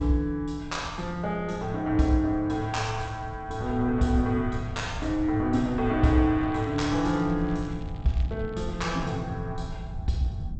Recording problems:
codec artefacts; G.722, log-spectral distance 2 dB, nothing above 8 kHz
wind noise; below 120 Hz, SNR 11 dB
crackle; from 6.5 to 8.5 s; loose cable, SNR 28 dB

